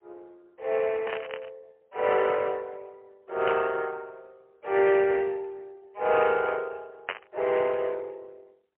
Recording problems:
telephone audio; 340 Hz to 3.1 kHz, AMR-NB, then MP3
burst of static; at 1 s, at 3.5 s and at 7 s; peak -1 dB vs average level

